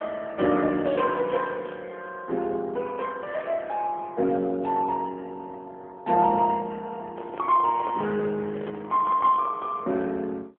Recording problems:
phone line; 220 Hz to 3.2 kHz, AMR-NB
handling noise; from 7 to 9.5 s; peak -5 dB vs average level

